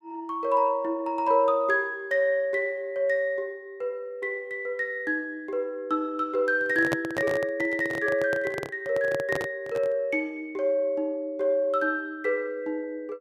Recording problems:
handling noise; from 6.5 to 10 s; peak +3 dB vs average level

